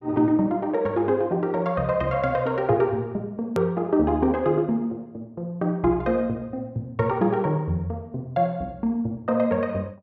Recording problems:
hard cut with a click; at 3.5 s

